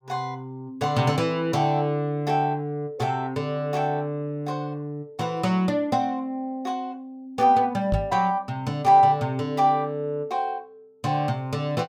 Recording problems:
knock on the microphone; at 8 s; peak +2 dB vs average level

